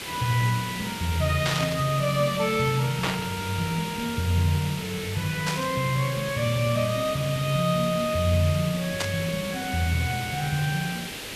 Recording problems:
background hiss; SNR 8 dB
burst of static; 4 times, first at 1.5 s; peak +2 dB vs average level

